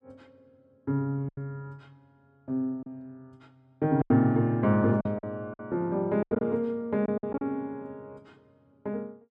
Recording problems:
lost packets; 8% of the sound replaced, filled with silence

